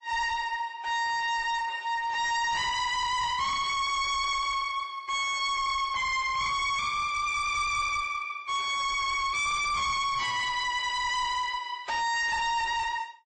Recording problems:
lossy codec; MP3, log-spectral distance 3 dB, nothing above 7.8 kHz
distortion; hard clipping, signal-to-distortion ratio 7 dB

